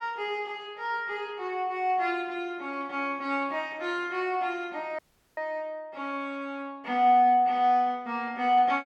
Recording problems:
audio cutting out; at 5 s

